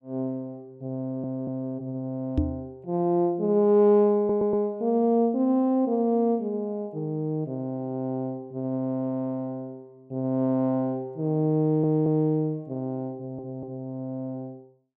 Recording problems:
stutter; 4 times, first at 1 s
microphone thump; at 2.5 s; peak +5 dB vs average level

